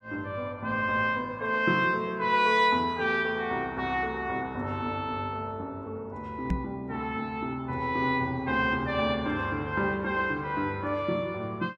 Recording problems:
knock on the microphone; at 6.5 s; peak +3 dB vs average level

